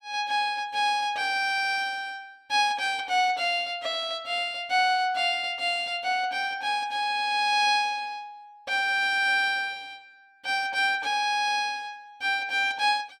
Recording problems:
none

